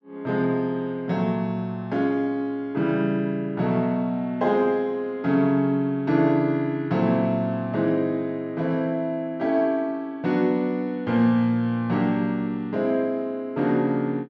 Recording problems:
none

